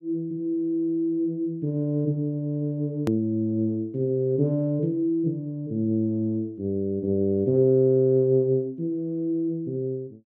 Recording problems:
click at an edit; at 3 s

